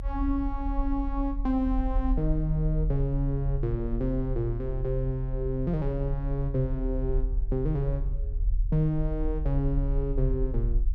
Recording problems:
rumble; below 42 Hz, strongest tone 40 Hz, SNR 3 dB

